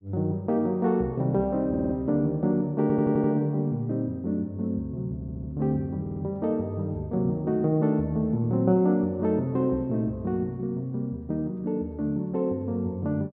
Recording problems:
audio stuttering; 4 times, first at 1.5 s

